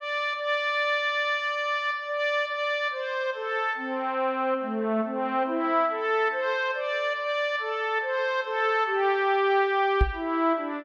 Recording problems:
microphone bump; at 10 s; peak +5 dB vs average level

